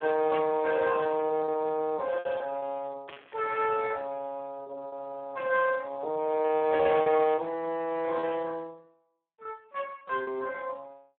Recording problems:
telephone audio; 240 Hz to 3.3 kHz, Speex
lost packets; 7% of the sound replaced, filled with repeated pitch periods
static burst; at 3 s and at 7 s; peak -9 dB vs average level

